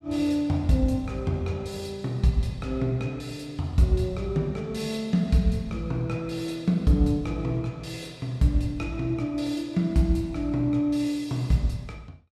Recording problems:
none

